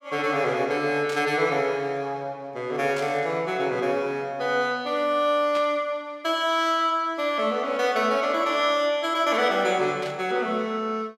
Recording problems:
static burst; 4 times, first at 1 s; peak -9 dB vs average level

